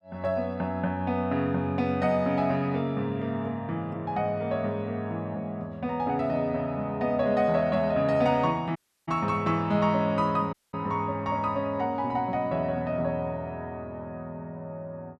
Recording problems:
audio cutting out; at 9 s and at 11 s

